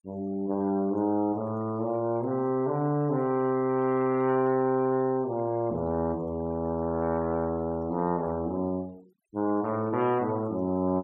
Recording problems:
noise reduction artefacts; signal-to-artefact ratio 27 dB

